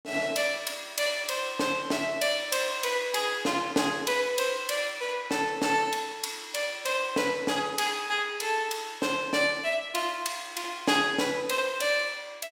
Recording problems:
none

